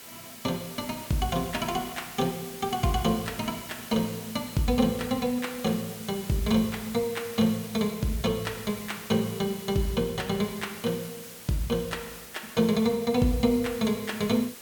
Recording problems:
hiss; slope -1 dB per octave, SNR 13 dB

